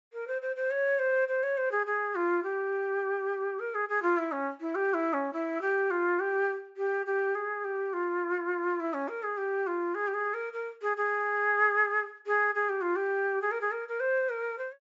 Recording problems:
low-pass filter; nothing above 8 kHz

